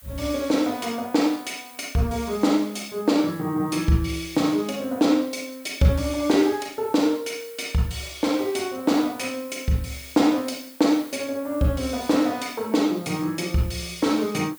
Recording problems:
hiss; SNR 21 dB

